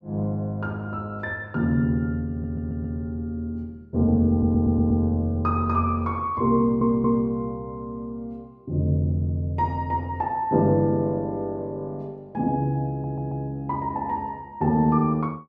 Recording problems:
audio stuttering; 4 times, first at 2.5 s

